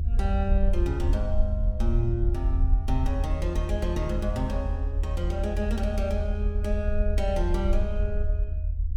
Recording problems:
rumble; below 76 Hz, SNR -4 dB

